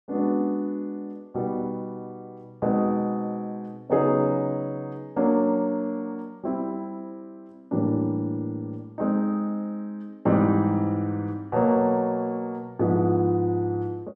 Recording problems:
none

